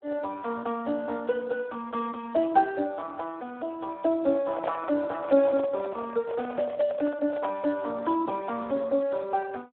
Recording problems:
phone line; 190 Hz to 2.9 kHz, Speex
handling noise; from 4.5 to 7.5 s; peak -1 dB vs average level

